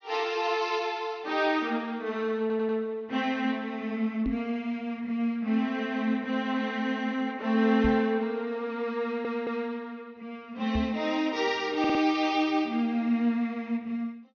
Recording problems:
treble cut off; nothing above 6.5 kHz
audio stuttering; at 2.5 s, at 9 s and at 12 s
microphone bump; at 4.5 s, at 8 s and at 11 s; peak +2 dB vs average level

